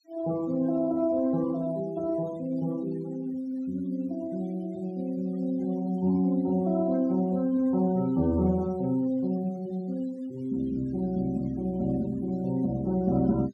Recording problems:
noise reduction artefacts; signal-to-artefact ratio 23 dB

